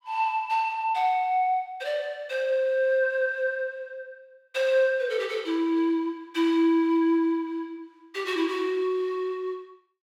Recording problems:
none

